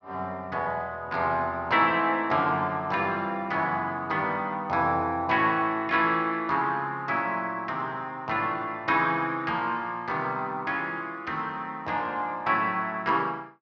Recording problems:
none

